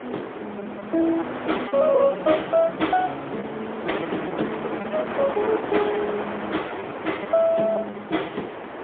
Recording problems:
telephone audio; 280 Hz to 3.5 kHz, AMR-NB, then MP3
wind noise; below 1.3 kHz, SNR 7 dB
lost packets; 7% of the sound replaced, filled with repeated pitch periods

